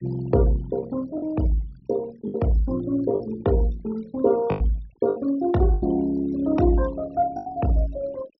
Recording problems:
treble missing; nothing above 5.7 kHz
noise reduction artefacts; signal-to-artefact ratio 20 dB
lost packets; 5% of the sound replaced, filled with the last packet

